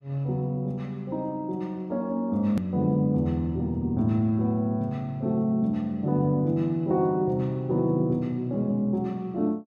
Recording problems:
hard cut with a click; at 2.5 s

